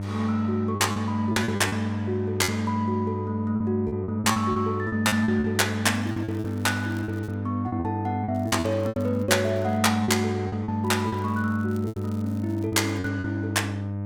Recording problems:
hum; 50 Hz, harmonics up to 900 Hz, SNR 5 dB
packet loss; 11% of the sound replaced, filled with repeated pitch periods
crackling; from 6 to 7.5 s, from 8.5 to 10 s and from 11 to 13 s; loose cable, SNR 28 dB

